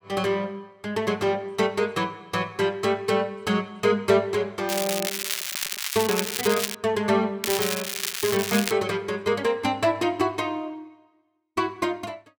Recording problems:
crackling; from 4.5 to 7 s and from 7.5 to 8.5 s; loose cable, SNR 2 dB

